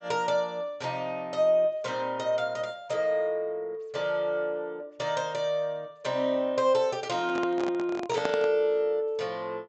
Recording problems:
treble missing; nothing above 8 kHz
handling noise; from 7 to 8.5 s; peak +1 dB vs average level

